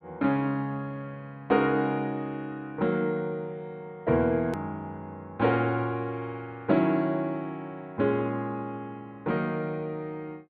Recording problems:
low-pass filter; nothing above 4.5 kHz
hard cut with a click; at 4.5 s

